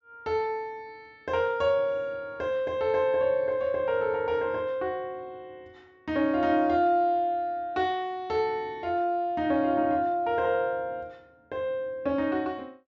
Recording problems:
treble cut off; nothing above 8 kHz

